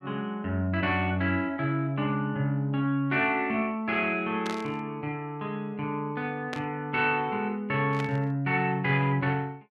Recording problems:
burst of static; at 4.5 s, at 6.5 s and at 8 s; peak -5 dB vs average level

